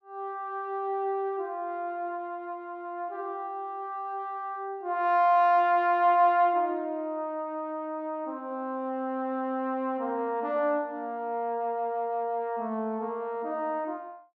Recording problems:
none

